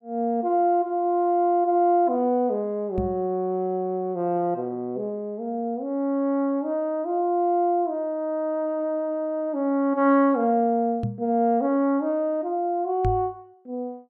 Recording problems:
microphone bump; at 3 s, at 11 s and at 13 s; peak 0 dB vs average level

